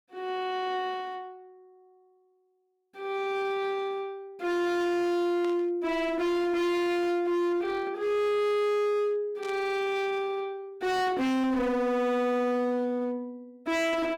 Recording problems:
distortion; hard clipping, signal-to-distortion ratio 6 dB
static burst; at 5.5 s and at 9.5 s; peak -13 dB vs average level

